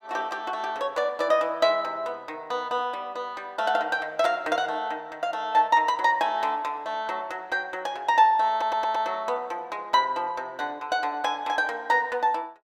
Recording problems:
stutter; at 8.5 s

